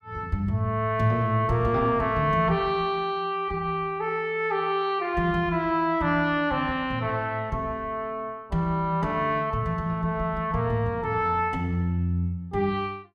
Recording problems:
none

